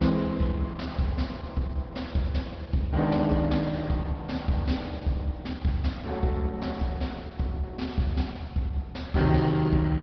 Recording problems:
low-pass filter; nothing above 5.2 kHz
lossy codec; Opus, log-spectral distance 3 dB

